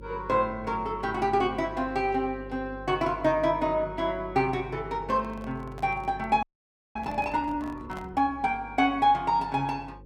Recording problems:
electrical hum; 50 Hz, harmonics up to 550 Hz, SNR 18 dB
handling noise; from 5 to 8 s; peak -10 dB vs average level
audio freezing; at 6.5 s for 0.5 s

